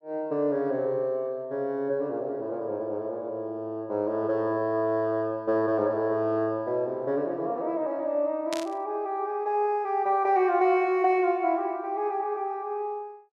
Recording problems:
burst of static; at 8.5 s; peak -3 dB vs average level

